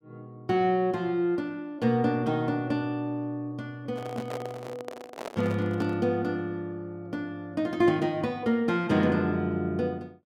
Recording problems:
microphone handling noise; from 4 to 6 s; peak -5 dB vs average level

